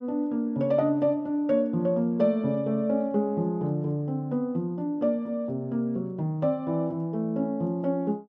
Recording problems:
none

